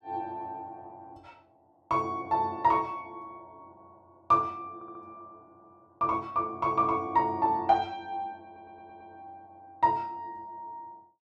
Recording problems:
stutter; at 5 s and at 8.5 s

